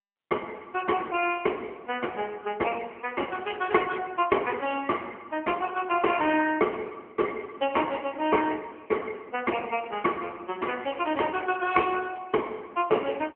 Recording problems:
phone line; 260 Hz to 3.1 kHz, AMR-NB

